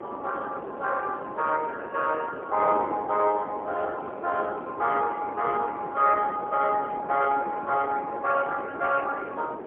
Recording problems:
telephone audio; 370 Hz to 3.1 kHz, AMR-NB, then MP3
wind noise; below 700 Hz, SNR 10 dB

